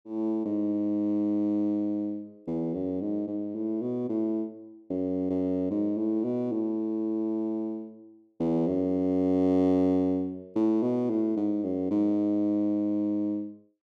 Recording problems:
none

